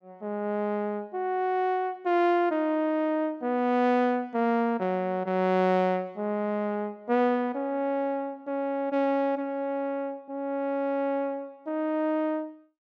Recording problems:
none

